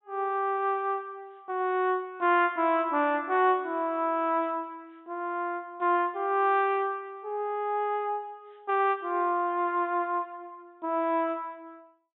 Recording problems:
treble cut off; nothing above 3.8 kHz

